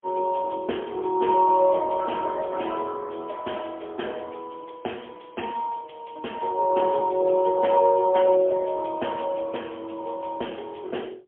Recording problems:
phone line; 260 Hz to 3.3 kHz, AMR-NB, then MP3

